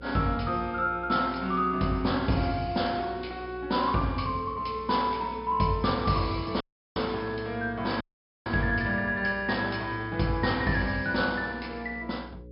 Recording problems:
treble missing; nothing above 5.5 kHz
electrical hum; 60 Hz, harmonics up to 540 Hz, SNR 18 dB
audio cutting out; at 6.5 s and at 8 s

